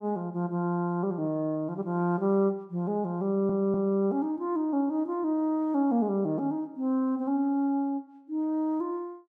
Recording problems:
audio stuttering; at 3.5 s

